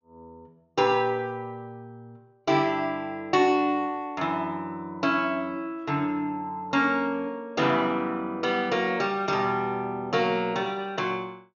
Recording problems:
treble missing; nothing above 6.7 kHz

